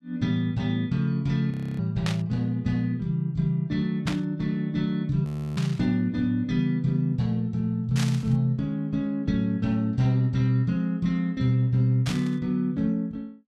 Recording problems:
audio freezing; at 1.5 s and at 5.5 s
burst of static; 5 times, first at 2 s; peak -2 dB vs average level

